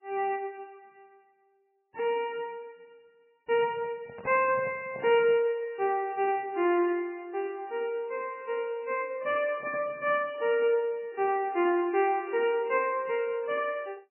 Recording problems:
lossy compression; MP3, log-spectral distance 2 dB, nothing above 2.4 kHz
handling noise; from 3.5 to 5.5 s; peak -10 dB vs average level

